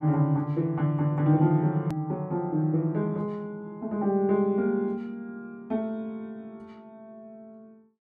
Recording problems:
hard cut with a click; at 2 s

